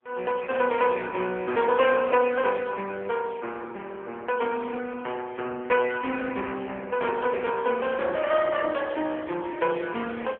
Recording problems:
telephone audio; 220 Hz to 3.3 kHz, AMR-NB

